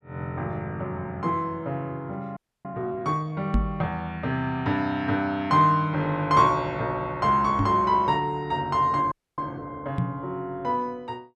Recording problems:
frozen audio; at 2.5 s and at 9 s
microphone bump; at 3.5 s, at 7.5 s and at 10 s; peak +5 dB vs average level

